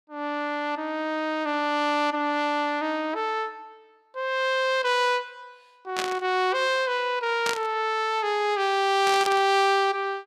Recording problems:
static burst; at 6 s, at 7.5 s and at 9 s; peak 0 dB vs average level

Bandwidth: 14.5 kHz